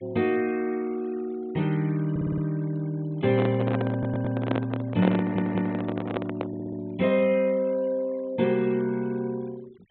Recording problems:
low-pass filter; nothing above 4 kHz
noise reduction artefacts; signal-to-artefact ratio 25 dB
stutter; 4 times, first at 2 s
microphone handling noise; from 3 to 7 s; peak +4 dB vs average level

